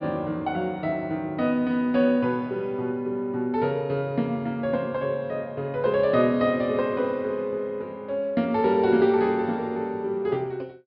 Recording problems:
low-pass filter; nothing above 5.5 kHz

